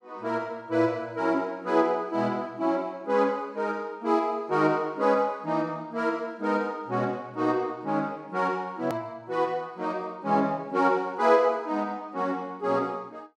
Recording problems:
hard cut with a click; at 9 s

